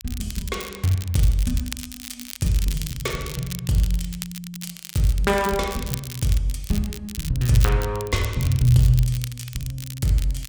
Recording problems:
crackle; vinyl, SNR 12 dB

